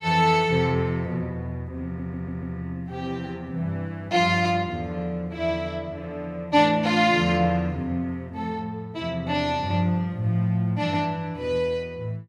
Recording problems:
audio stuttering; at 2 s

